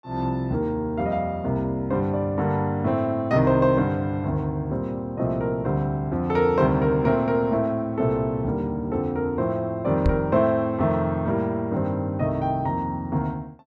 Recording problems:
knock on the microphone; at 10 s; peak +5 dB vs average level

